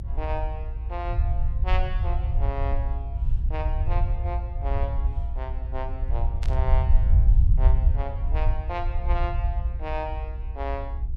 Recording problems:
electrical hum; 60 Hz, harmonics up to 1.3 kHz, SNR 21 dB
rumble; below 66 Hz, SNR -9 dB
static burst; at 6.5 s; peak -2 dB vs average level

